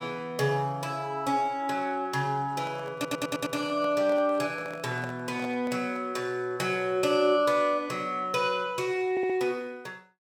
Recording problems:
handling noise; from 2.5 to 6 s; peak -9 dB vs average level
stutter; at 3 s and at 9 s

